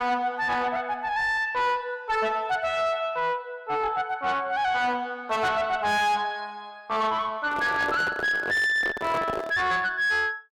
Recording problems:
distorted audio; soft clipping, signal-to-distortion ratio 6 dB
handling noise; from 7.5 to 9.5 s; peak -2 dB vs average level

